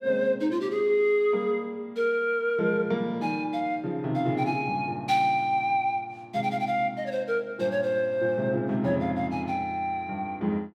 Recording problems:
none

